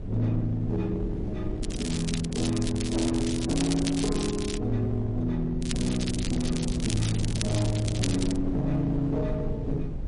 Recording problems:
codec artefacts; MP3, log-spectral distance 4 dB, nothing above 9.5 kHz
distortion; hard clipping, uneven, signal-to-distortion ratio 12 dB
low-frequency rumble; below 64 Hz, SNR 10 dB
wind noise; below 280 Hz, SNR 9 dB
crackle; from 1.5 to 4.5 s and from 5.5 to 8.5 s; loose cable, SNR 8 dB

